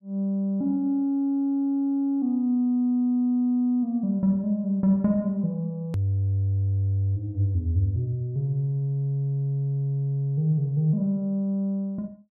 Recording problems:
edit click; at 6 s

